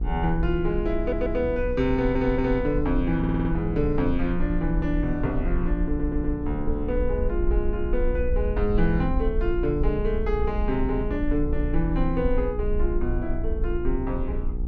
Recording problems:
hum; 60 Hz, harmonics up to 960 Hz, SNR 11 dB
rumble; below 54 Hz, SNR 4 dB
stutter; 4 times, first at 1 s

